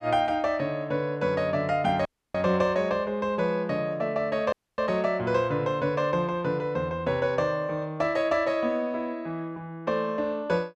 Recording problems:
dropout; at 2 s and at 4.5 s

